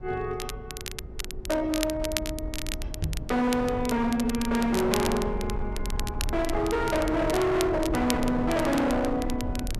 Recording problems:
distortion; hard clipping, signal-to-distortion ratio 6 dB
rumble; below 150 Hz, SNR 9 dB
crackling; vinyl, SNR 11 dB
microphone thump; at 3 s; peak +1 dB vs average level

